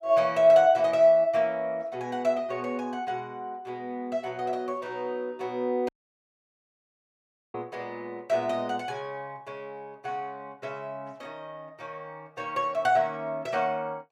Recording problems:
dropout; at 6 s for 1.5 s

